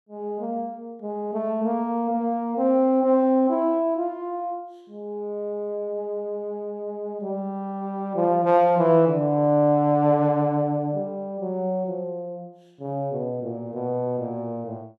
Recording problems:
none

